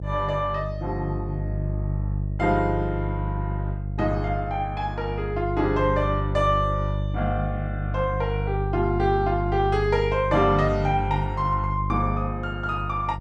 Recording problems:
hum; 50 Hz, harmonics up to 500 Hz, SNR 3 dB

